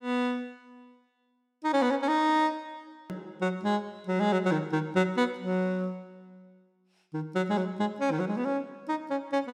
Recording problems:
edit click; at 3 s

